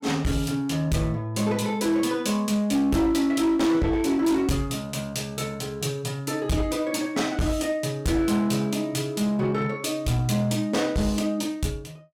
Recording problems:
distorted audio; hard clipping, uneven, signal-to-distortion ratio 11 dB

